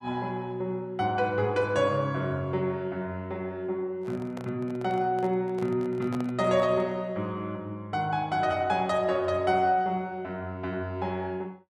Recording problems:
handling noise; from 4 to 7 s; peak -7 dB vs average level

